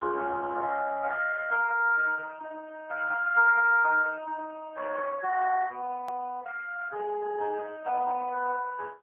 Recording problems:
phone line; 320 Hz to 2.8 kHz, AMR-NB
click at an edit; at 6 s

